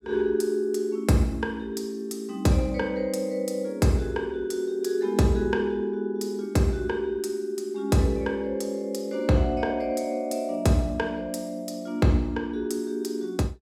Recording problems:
none

